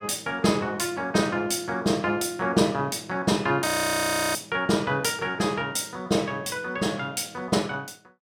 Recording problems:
audio freezing; at 3.5 s for 0.5 s

